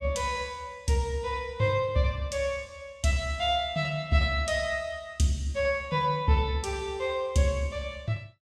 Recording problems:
none

